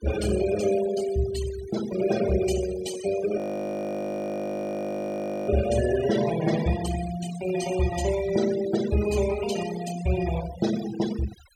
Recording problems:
noise reduction artefacts; signal-to-artefact ratio 11 dB
audio freezing; at 3.5 s for 2 s

